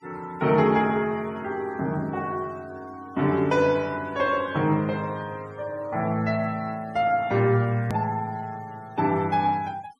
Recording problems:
noise reduction artefacts; signal-to-artefact ratio 26 dB
click at an edit; at 8 s

